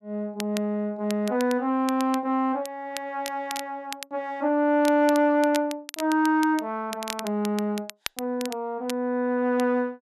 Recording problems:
crackling; vinyl, SNR 14 dB

